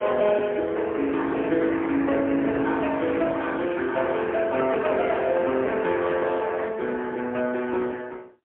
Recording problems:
telephone audio; 240 Hz to 3.4 kHz, AMR-NB, then MP3

